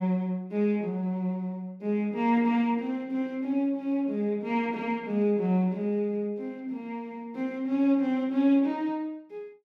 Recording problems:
none

